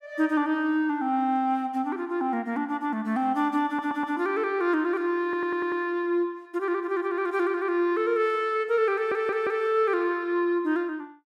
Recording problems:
audio stuttering; at 3.5 s, at 5 s and at 9 s

